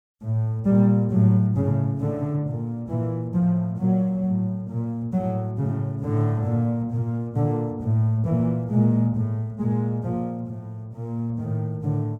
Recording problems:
none

